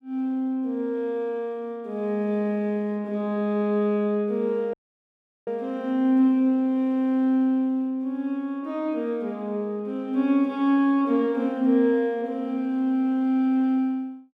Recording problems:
audio cutting out; at 4.5 s for 0.5 s

